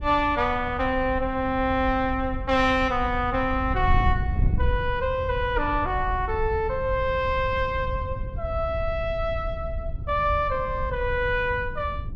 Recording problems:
wind on the microphone; below 92 Hz, SNR 7 dB

